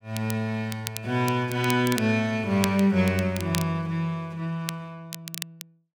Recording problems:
crackling; vinyl, SNR 11 dB

